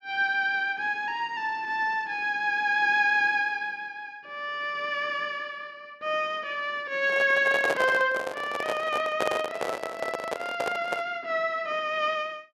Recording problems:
handling noise; from 7 to 11 s; peak +3 dB vs average level

